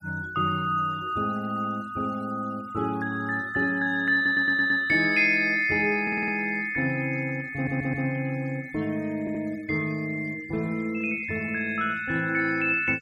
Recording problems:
noise reduction artefacts; signal-to-artefact ratio 25 dB
stutter; 4 times, first at 4 s

